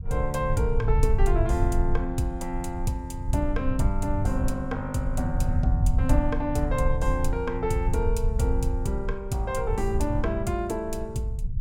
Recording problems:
rumble; below 78 Hz, SNR 1 dB

